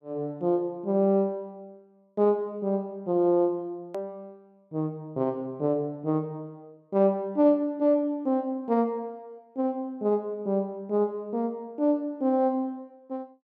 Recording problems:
click at an edit; at 4 s

